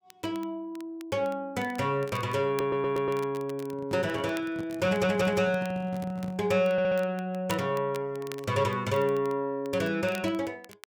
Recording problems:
crackle; vinyl, SNR 21 dB
audio stuttering; at 2.5 s, at 5 s and at 6.5 s
handling noise; from 3.5 to 6.5 s; peak -6 dB vs average level

